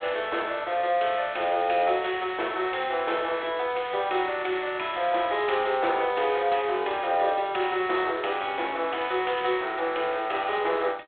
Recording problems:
telephone audio; 280 Hz to 3.5 kHz, G.726

